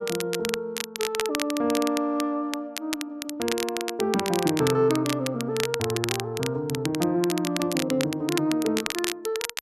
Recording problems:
crackle; vinyl, SNR 6 dB

